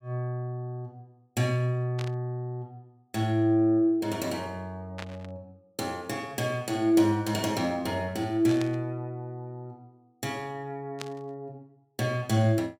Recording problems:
static burst; 4 times, first at 2 s; peak -4 dB vs average level

